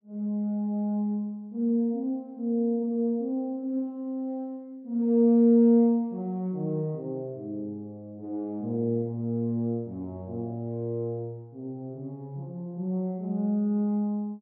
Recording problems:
none

